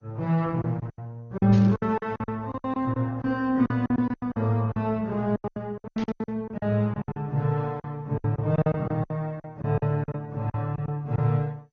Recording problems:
lossy codec; Opus, then MP2, log-spectral distance 2 dB
packet loss; 17% of the sound replaced, filled with silence
burst of static; at 1.5 s and at 6 s; peak -12 dB vs average level

